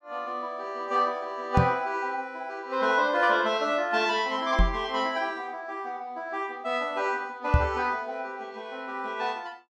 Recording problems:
microphone thump; at 1.5 s, at 4.5 s and at 7.5 s; peak +10 dB vs average level

